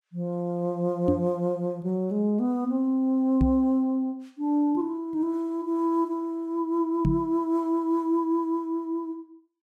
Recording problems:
microphone bump; at 1 s, at 3.5 s and at 7 s; peak +5 dB vs average level

